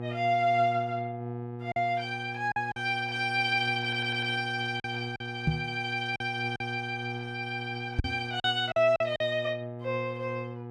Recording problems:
hum; 60 Hz, harmonics up to 1.3 kHz, SNR 9 dB
lost packets; 5% of the sound replaced, filled with silence
stutter; at 4 s
knock on the microphone; at 5.5 s and at 8 s; peak +7 dB vs average level

